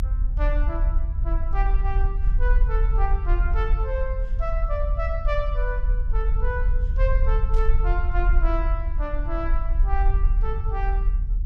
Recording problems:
low-frequency rumble; below 48 Hz, strongest tone 38 Hz, SNR -7 dB
static burst; at 7.5 s; peak -13 dB vs average level

